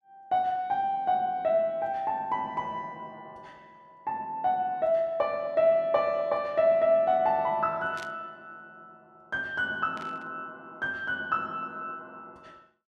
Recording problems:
burst of static; at 8 s and at 10 s; peak -12 dB vs average level

